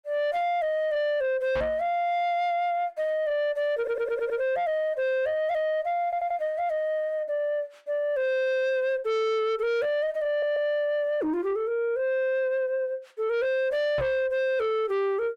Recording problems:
distortion; soft clipping, signal-to-distortion ratio 10 dB
microphone thump; at 1.5 s and at 14 s; peak -1 dB vs average level
stutter; at 4 s, at 6 s and at 10 s

